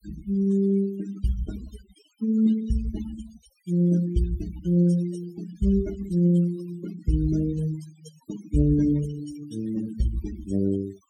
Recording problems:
denoising artefacts; signal-to-artefact ratio 16 dB

